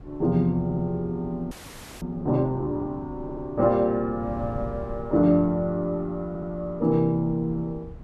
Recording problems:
wind on the microphone; below 160 Hz, SNR 17 dB
audio stuttering; at 0.5 s, at 3 s and at 6.5 s
frozen audio; at 1.5 s

